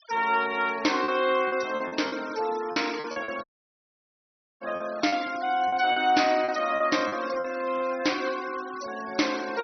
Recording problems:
treble missing; nothing above 5.9 kHz
noise reduction artefacts; signal-to-artefact ratio 16 dB
packet loss; 8% of the sound replaced, filled with repeated pitch periods
dropout; at 3.5 s for 1 s

